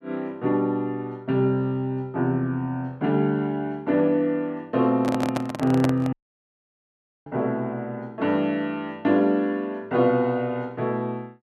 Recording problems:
handling noise; from 5 to 6 s; peak +2 dB vs average level
audio cutting out; at 6 s for 1 s

